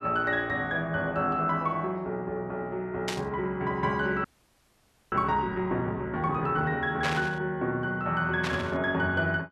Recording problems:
static burst; at 3 s, at 7 s and at 8.5 s; peak +2 dB vs average level
audio freezing; at 4 s for 1 s

